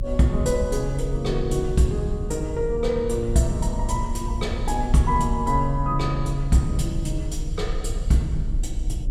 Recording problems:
low-frequency rumble; below 64 Hz, strongest tone 30 Hz, SNR 6 dB

